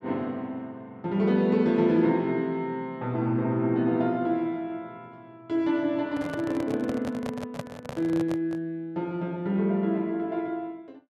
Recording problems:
handling noise; from 6 to 8.5 s; peak -3 dB vs average level

